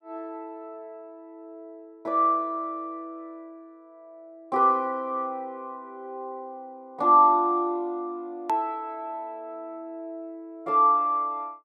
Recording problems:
click at an edit; at 8.5 s

